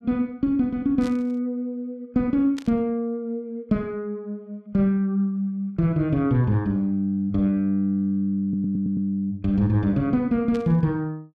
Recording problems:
burst of static; at 1 s, at 2.5 s and at 11 s; peak -11 dB vs average level
audio stuttering; at 8.5 s

